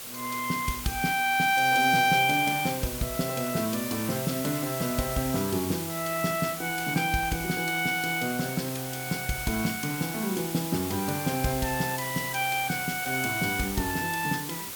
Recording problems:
hiss; slope 0 dB per octave, SNR 7 dB

